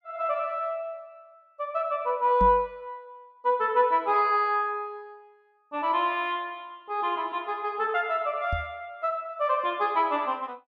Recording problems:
knock on the microphone; at 2.5 s and at 8.5 s; peak -1 dB vs average level

